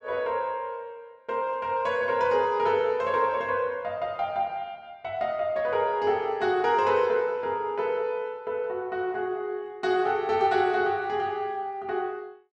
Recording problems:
none

